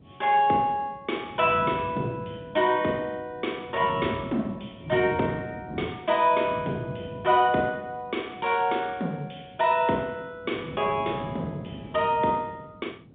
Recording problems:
phone line; 130 Hz to 3.7 kHz, G.711
wind on the microphone; below 310 Hz, SNR 14 dB

